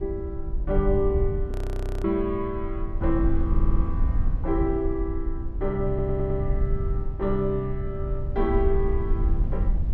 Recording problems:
low-frequency rumble; below 64 Hz, SNR 1 dB
wind noise; below 84 Hz, SNR 9 dB
frozen audio; at 1.5 s for 0.5 s
stutter; at 3.5 s and at 6 s

